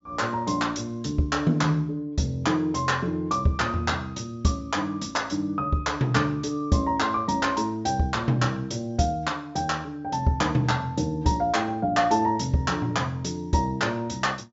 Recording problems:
low-pass filter; nothing above 7.5 kHz

